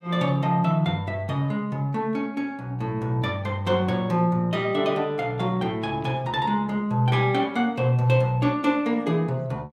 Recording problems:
none

